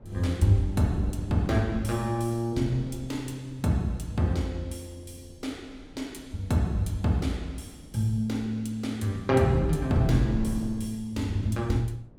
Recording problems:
wind on the microphone; below 210 Hz, SNR 16 dB

